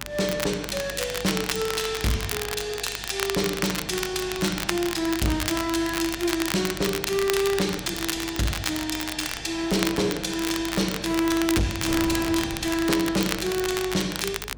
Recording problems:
distortion; hard clipping, signal-to-distortion ratio 11 dB
electrical hum; 50 Hz, harmonics up to 500 Hz, SNR 19 dB
wind on the microphone; below 490 Hz, SNR 18 dB
crackling; vinyl, SNR 6 dB

